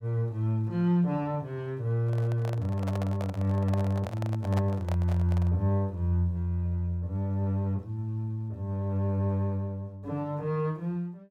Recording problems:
handling noise; from 2 to 5.5 s; peak -3 dB vs average level

